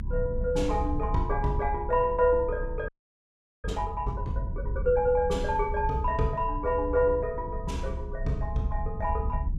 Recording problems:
low-frequency rumble; below 76 Hz, SNR 6 dB
audio freezing; at 3 s for 1 s

